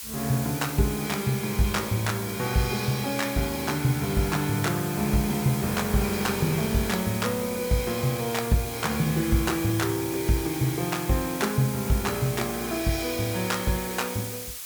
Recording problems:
background hiss; slope +4 dB per octave, SNR 9 dB

